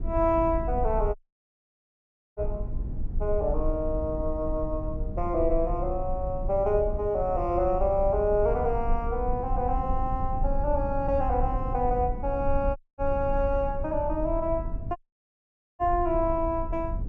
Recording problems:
low-frequency rumble; below 64 Hz, SNR 6 dB
audio cutting out; at 1 s for 1 s, at 13 s and at 15 s for 1 s

